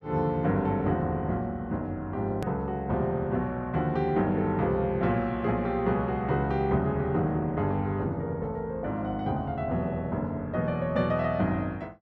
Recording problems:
hard cut with a click; at 2.5 s

